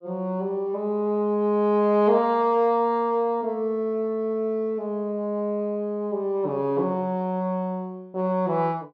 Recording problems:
none

